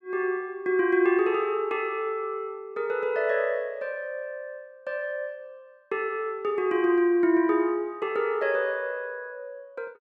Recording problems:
none

